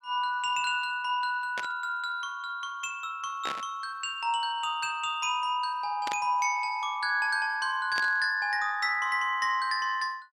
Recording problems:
burst of static; 4 times, first at 1.5 s; peak -2 dB vs average level

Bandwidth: 14.5 kHz